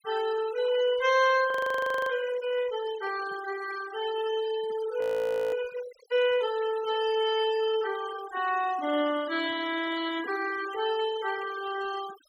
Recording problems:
denoising artefacts; signal-to-artefact ratio 15 dB
audio freezing; at 1.5 s for 0.5 s and at 5 s for 0.5 s

